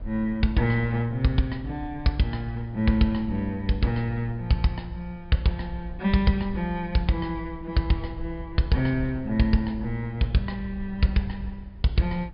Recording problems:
treble cut off; nothing above 5.1 kHz
rumble; below 76 Hz, SNR 17 dB

